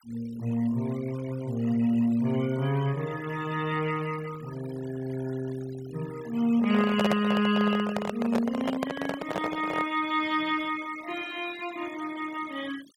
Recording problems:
denoising artefacts; signal-to-artefact ratio 17 dB
handling noise; from 6.5 to 10 s; peak +4 dB vs average level

